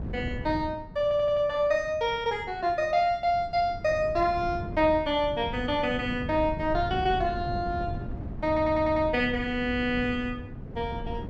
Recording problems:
wind on the microphone; below 200 Hz, SNR 11 dB
stutter; at 1 s and at 8.5 s

